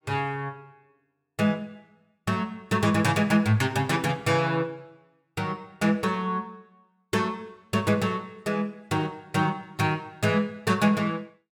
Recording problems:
none

